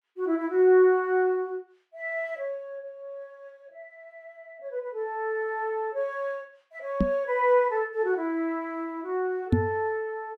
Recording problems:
microphone bump; at 7 s and at 9.5 s; peak +8 dB vs average level

